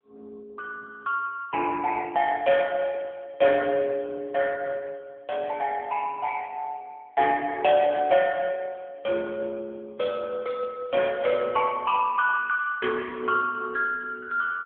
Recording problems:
telephone audio; 260 Hz to 2.6 kHz, AMR-NB

